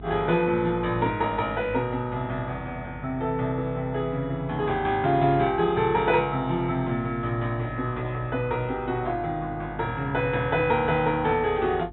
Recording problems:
treble cut off; nothing above 3.9 kHz
hum; 50 Hz, harmonics up to 450 Hz, SNR 18 dB

